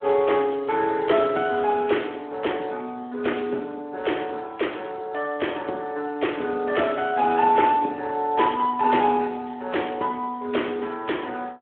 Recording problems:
telephone audio; 260 Hz to 3.3 kHz, Speex

